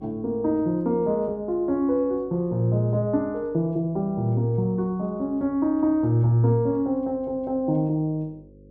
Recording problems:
electrical hum; 50 Hz, harmonics up to 550 Hz, SNR 26 dB

